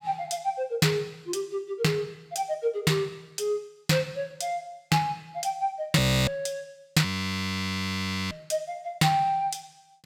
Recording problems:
frozen audio; at 6 s and at 7 s for 1.5 s

